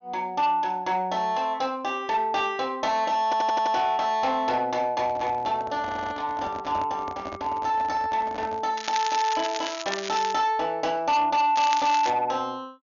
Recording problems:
treble cut off; nothing above 6.8 kHz
distorted audio; soft clipping, signal-to-distortion ratio 11 dB
stutter; at 3.5 s and at 6 s
microphone handling noise; from 5 to 8.5 s; peak -7 dB vs average level
crackle; from 9 to 10 s and at 12 s; loose cable, SNR 9 dB

